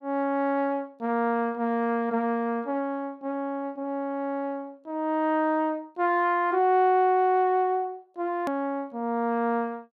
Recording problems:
hard cut with a click; at 8.5 s

